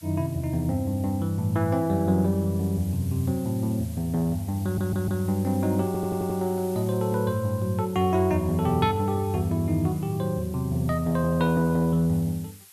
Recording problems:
background hiss; slope +3 dB per octave, SNR 21 dB
stutter; at 4.5 s and at 6 s

